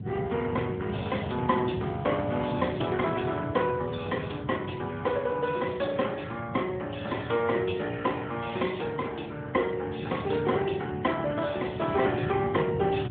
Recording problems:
telephone audio; 150 Hz to 3.6 kHz, AMR-NB
wind on the microphone; below 200 Hz, SNR 9 dB

